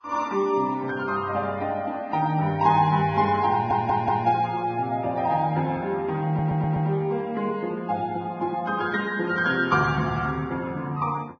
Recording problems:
lossy compression; Vorbis, log-spectral distance 2 dB, nothing above 6.2 kHz
audio stuttering; at 3.5 s and at 6.5 s

